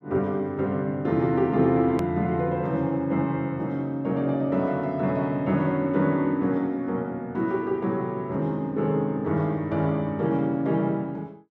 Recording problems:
hard cut with a click; at 2 s

